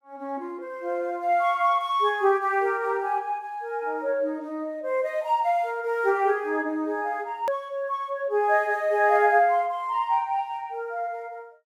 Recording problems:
click at an edit; at 7.5 s

